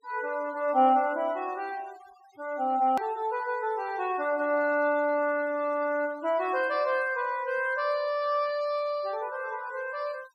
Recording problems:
denoising artefacts; signal-to-artefact ratio 24 dB
hard cut with a click; at 3 s

